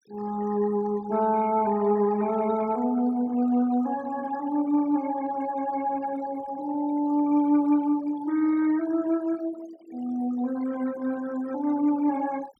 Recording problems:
denoising artefacts; signal-to-artefact ratio 20 dB

